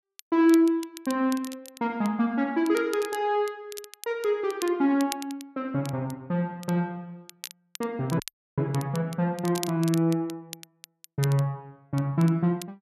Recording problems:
crackling; vinyl, SNR 16 dB
dropout; at 8 s

